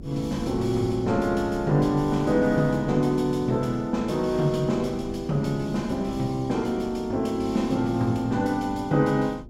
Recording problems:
hum; 50 Hz, harmonics up to 400 Hz, SNR 22 dB
wind noise; below 230 Hz, SNR 17 dB

